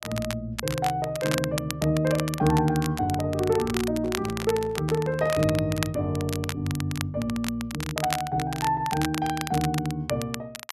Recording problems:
crackle; vinyl, SNR 9 dB
microphone handling noise; from 4 to 5.5 s; peak -7 dB vs average level

